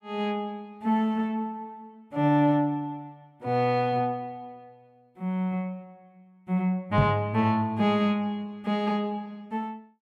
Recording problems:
microphone bump; at 7 s; peak +7 dB vs average level

